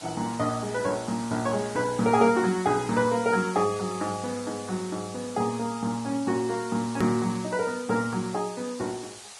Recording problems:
codec artefacts; Vorbis, log-spectral distance 8 dB, nothing above 13.1 kHz
hiss; SNR 15 dB
click at an edit; at 7 s

